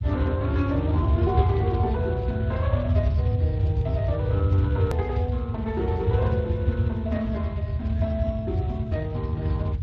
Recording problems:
lossy compression; Speex, log-spectral distance 2 dB, nothing above 13.1 kHz
low-frequency rumble; below 110 Hz, SNR -4 dB
click at an edit; at 5 s

